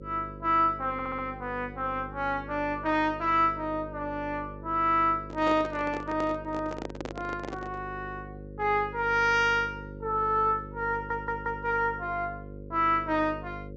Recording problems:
treble missing; nothing above 8 kHz
hum; 50 Hz, harmonics up to 550 Hz, SNR 15 dB
stutter; at 1 s and at 11 s
handling noise; from 5 to 8 s; peak -4 dB vs average level

